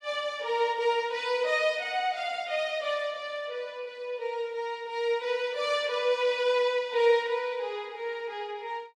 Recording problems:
none

